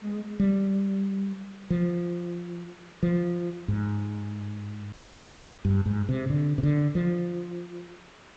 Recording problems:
treble missing; nothing above 8 kHz
background hiss; SNR 23 dB
audio cutting out; at 5 s for 0.5 s

